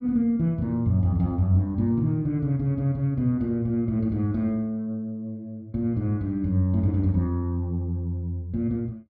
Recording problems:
none

